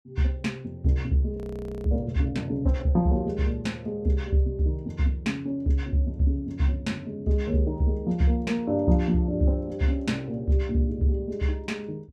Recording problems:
frozen audio; at 1.5 s

